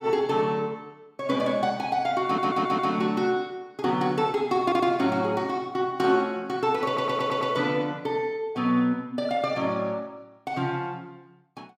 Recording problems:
stutter; at 2.5 s, at 4.5 s and at 7 s

